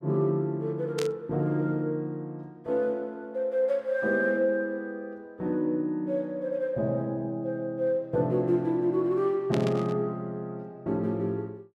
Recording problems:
static burst; at 1 s and at 9.5 s; peak -3 dB vs average level

